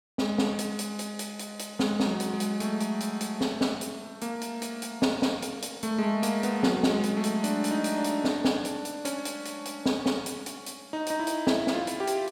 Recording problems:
none

